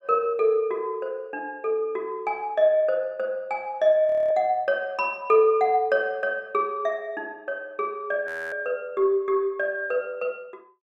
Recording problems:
frozen audio; at 4 s and at 8.5 s

